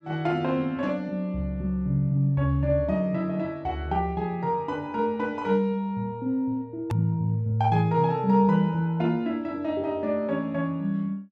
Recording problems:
edit click; at 7 s

